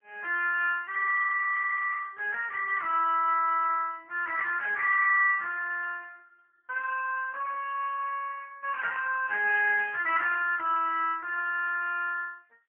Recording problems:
phone line; 500 Hz to 2.9 kHz, AMR-NB, then MP3

